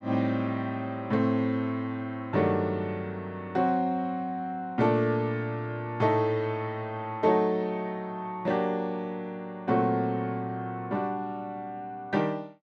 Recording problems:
none

